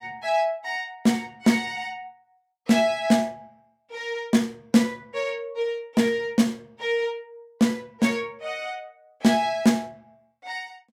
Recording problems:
none

